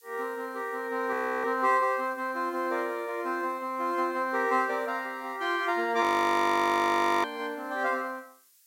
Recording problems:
hiss; SNR 29 dB
frozen audio; at 1 s and at 6 s for 1 s

